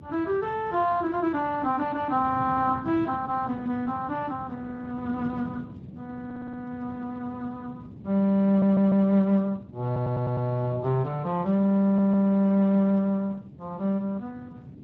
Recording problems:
lossy compression; Speex, then Opus, log-spectral distance 3 dB
wind noise; below 250 Hz, SNR 16 dB
stutter; 4 times, first at 6.5 s

